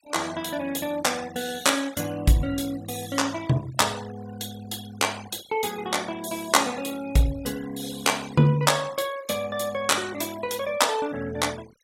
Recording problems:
denoising artefacts; signal-to-artefact ratio 18 dB

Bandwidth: 16 kHz